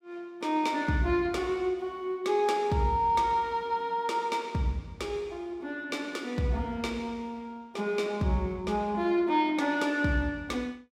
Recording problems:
none

